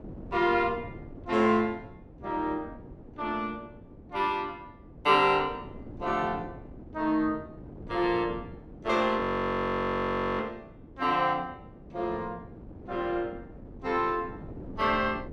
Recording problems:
wind on the microphone; below 350 Hz, SNR 17 dB
audio freezing; at 9 s for 1 s

